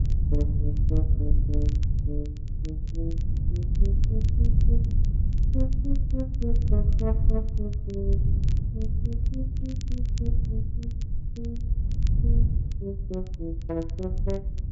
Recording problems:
treble missing; nothing above 8 kHz
wind noise; below 88 Hz, SNR -10 dB
crackling; vinyl, SNR 19 dB

